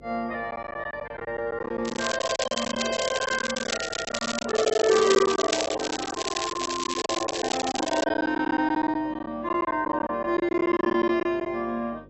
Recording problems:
codec artefacts; AAC, log-spectral distance 8 dB, nothing above 6.7 kHz
hum; 50 Hz, harmonics up to 550 Hz, SNR 23 dB
packet loss; 15% of the sound replaced, filled with silence
crackling; from 2 to 8 s; loose cable, SNR 4 dB

